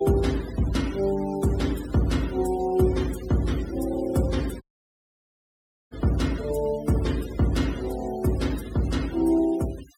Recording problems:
denoising artefacts; signal-to-artefact ratio 18 dB
audio cutting out; at 4.5 s for 1.5 s

